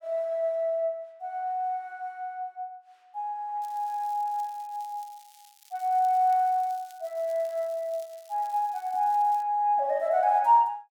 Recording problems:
crackle; from 3.5 to 9.5 s; loose cable, SNR 27 dB

